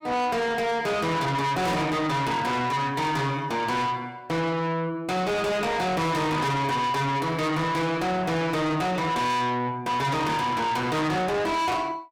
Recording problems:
distorted audio; soft clipping, signal-to-distortion ratio 6 dB

